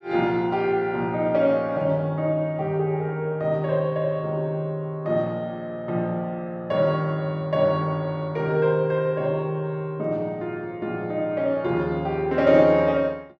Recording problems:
none

